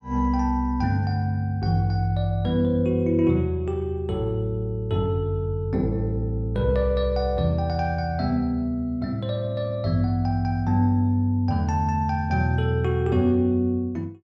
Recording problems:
none

